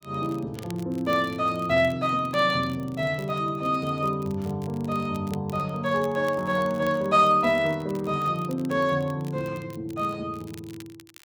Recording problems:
crackling; vinyl, SNR 25 dB

